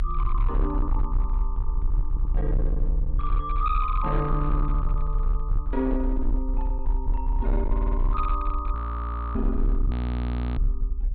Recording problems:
treble missing; nothing above 4.4 kHz
distorted audio; hard clipping, uneven, signal-to-distortion ratio 11 dB
low-frequency rumble; below 56 Hz, strongest tone 34 Hz, SNR -3 dB
stutter; at 2 s and at 7.5 s
audio freezing; at 8.5 s for 0.5 s and at 10 s for 0.5 s

